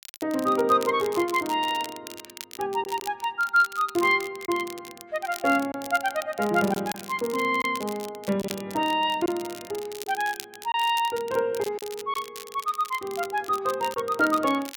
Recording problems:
crackling; vinyl, SNR 15 dB
packet loss; 2% of the sound replaced, filled with silence

